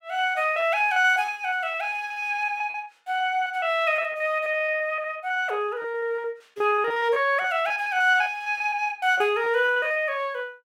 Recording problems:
lost packets; 16% of the sound replaced, filled with repeated pitch periods

